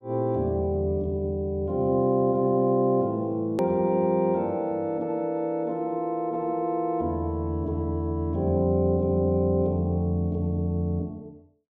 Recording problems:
click at an edit; at 3.5 s

